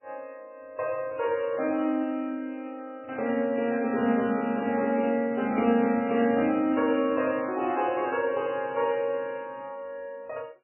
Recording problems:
codec artefacts; MP3, log-spectral distance 2 dB, nothing above 2.7 kHz

